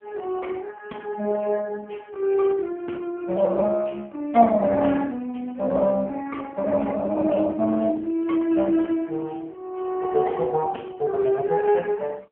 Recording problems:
telephone audio; 220 Hz to 3.5 kHz, AMR-NB

